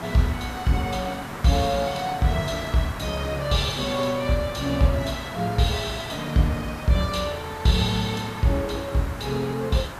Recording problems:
hiss; SNR 11 dB

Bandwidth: 14.5 kHz